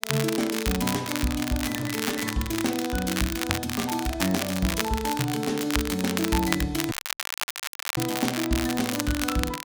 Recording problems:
crackle; vinyl, SNR 3 dB
dropout; at 7 s for 1 s

